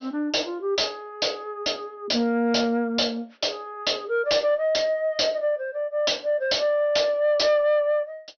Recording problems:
treble missing; nothing above 5.9 kHz
distorted audio; soft clipping, signal-to-distortion ratio 9 dB

